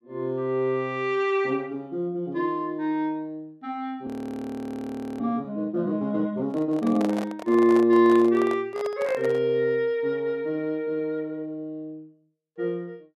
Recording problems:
frozen audio; at 4 s for 1 s
handling noise; from 6.5 to 9.5 s; peak -3 dB vs average level

